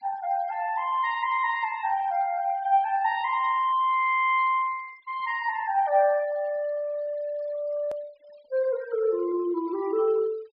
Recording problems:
low-pass filter; nothing above 5.5 kHz
noise reduction artefacts; signal-to-artefact ratio 25 dB
hard cut with a click; at 8 s

